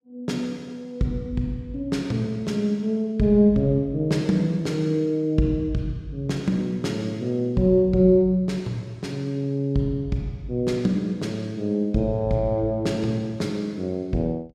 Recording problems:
none

